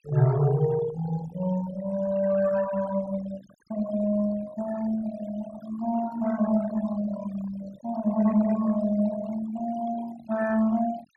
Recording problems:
denoising artefacts; signal-to-artefact ratio 15 dB

